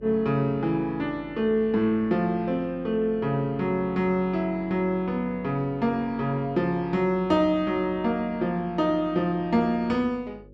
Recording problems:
hum; 50 Hz, harmonics up to 550 Hz, SNR 24 dB

